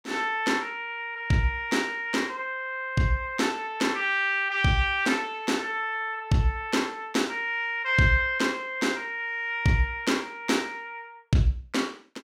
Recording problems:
none

